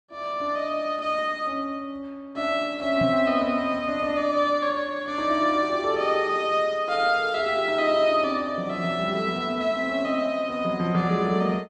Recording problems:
knock on the microphone; at 3 s; peak -1 dB vs average level

